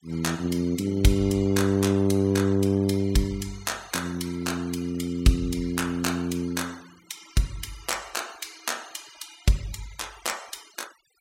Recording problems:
noise reduction artefacts; signal-to-artefact ratio 22 dB

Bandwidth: 16 kHz